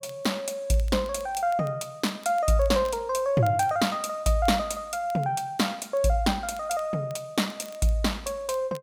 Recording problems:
crackle; vinyl, SNR 26 dB

